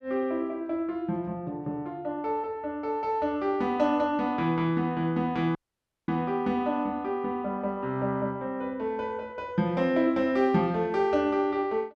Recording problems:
dropout; at 5.5 s for 0.5 s

